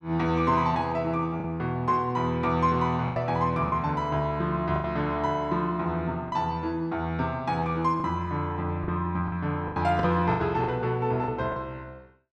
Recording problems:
packet loss; 6% of the sound replaced, filled with the last packet

